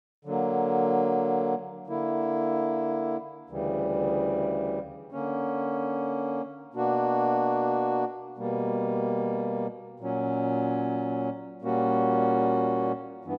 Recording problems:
none

